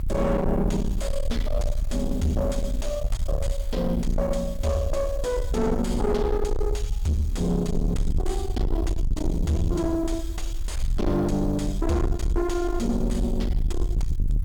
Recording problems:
distortion; soft clipping, signal-to-distortion ratio 6 dB
hiss; slope -5 dB per octave, SNR 25 dB
rumble; below 90 Hz, SNR 2 dB

